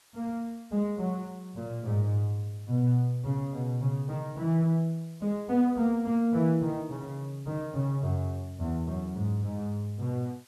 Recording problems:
hiss; slope +1 dB per octave, SNR 29 dB

